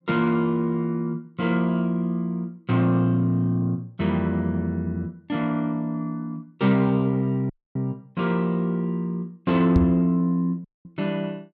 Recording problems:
dropout; at 7.5 s and at 11 s
microphone bump; at 10 s; peak +6 dB vs average level

